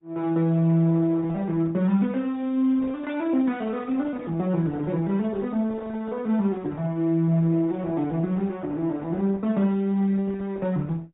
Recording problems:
treble cut off; nothing above 3.8 kHz
lossy compression; Opus, log-spectral distance 2 dB

